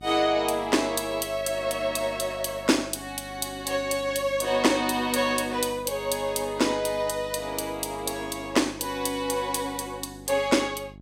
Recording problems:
hum; 50 Hz, harmonics up to 700 Hz, SNR 20 dB

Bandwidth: 16 kHz